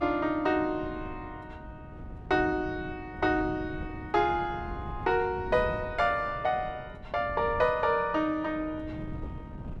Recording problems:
wind noise; below 210 Hz, SNR 13 dB

